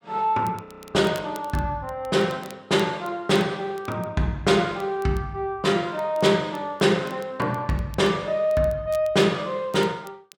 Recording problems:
crackling; vinyl, SNR 26 dB
audio freezing; at 0.5 s

